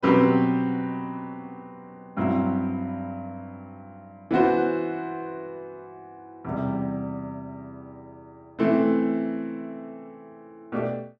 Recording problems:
none

